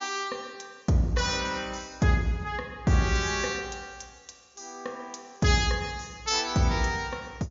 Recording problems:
low-pass filter; nothing above 7.2 kHz

